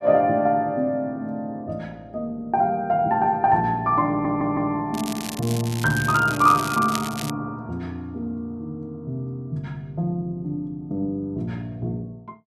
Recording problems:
audio stuttering; at 4 s
crackle; from 5 to 7.5 s; loose cable, SNR 10 dB

